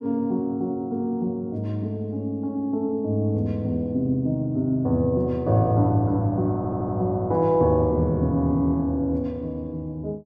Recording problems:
audio stuttering; at 6.5 s

